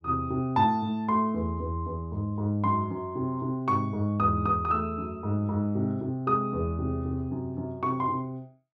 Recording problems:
none

